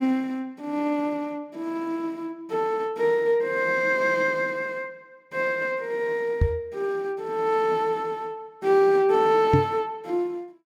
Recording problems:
microphone thump; at 6.5 s and at 9.5 s; peak +7 dB vs average level

